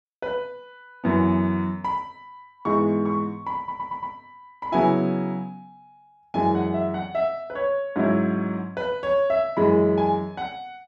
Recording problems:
stutter; at 3.5 s

